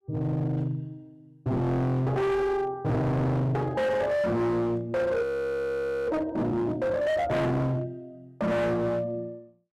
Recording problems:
distortion; hard clipping, signal-to-distortion ratio 7 dB
frozen audio; at 5 s for 1 s

